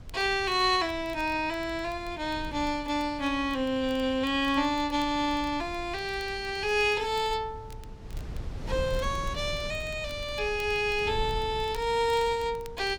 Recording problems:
wind on the microphone; below 120 Hz, SNR 14 dB
crackling; vinyl, SNR 27 dB

